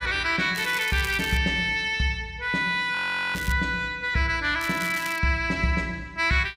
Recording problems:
crackling; at 0.5 s, at 3.5 s and at 4.5 s; loose cable, SNR 14 dB
frozen audio; at 3 s

